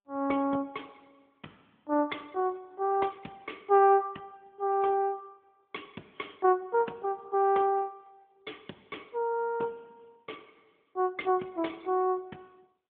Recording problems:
phone line; 220 Hz to 3.4 kHz, AMR-NB

